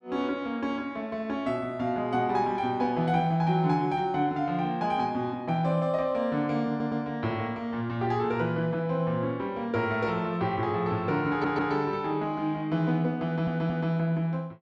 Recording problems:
stutter; at 6.5 s, at 11 s and at 13 s

